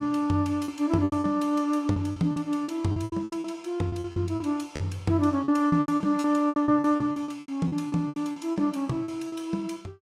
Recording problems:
packet loss; 17% of the sound replaced, filled with repeated pitch periods

